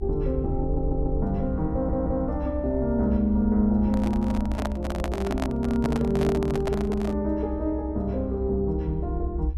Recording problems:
rumble; below 68 Hz, strongest tone 66 Hz, SNR 6 dB
audio stuttering; at 0.5 s and at 1.5 s
handling noise; from 4 to 7 s; peak 0 dB vs average level

